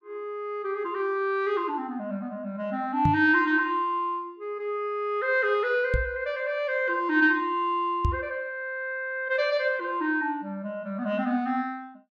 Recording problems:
knock on the microphone; at 3 s, at 6 s and at 8 s; peak +6 dB vs average level

